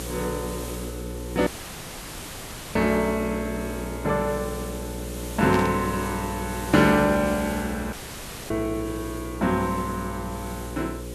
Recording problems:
electrical hum; 60 Hz, harmonics up to 540 Hz, SNR 10 dB
background hiss; slope -2 dB per octave, SNR 14 dB
dropout; at 1.5 s for 1.5 s and at 8 s for 0.5 s
burst of static; at 5.5 s; peak -5 dB vs average level

